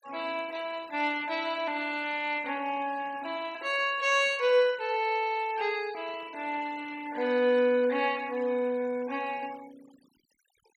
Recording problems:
noise reduction artefacts; signal-to-artefact ratio 21 dB

